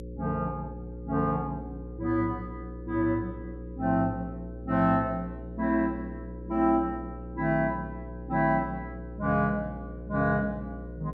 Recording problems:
hum; 60 Hz, harmonics up to 540 Hz, SNR 11 dB

